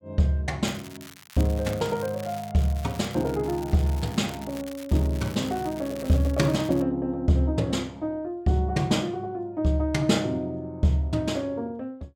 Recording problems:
crackle; from 0.5 to 7 s; loose cable, SNR 18 dB

